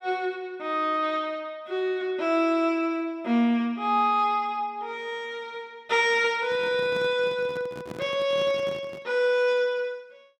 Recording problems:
handling noise; from 6.5 to 9 s; peak -8 dB vs average level

